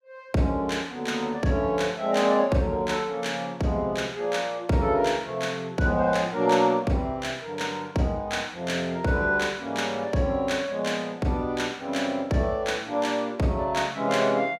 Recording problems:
none

